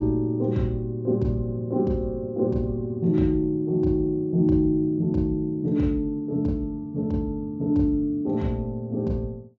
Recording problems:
treble missing; nothing above 7.5 kHz

